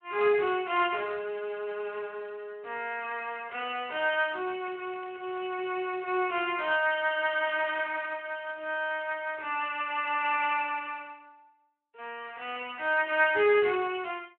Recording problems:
telephone audio; 320 Hz to 3.3 kHz, Speex
crackling; from 4.5 to 9 s and from 12 to 14 s; loose cable, SNR 26 dB

